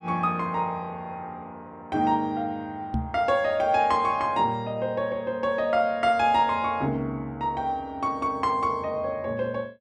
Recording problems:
knock on the microphone; at 3 s; peak +1 dB vs average level

